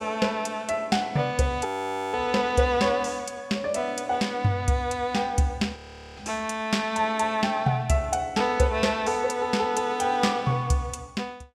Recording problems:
audio freezing; at 1.5 s and at 6 s

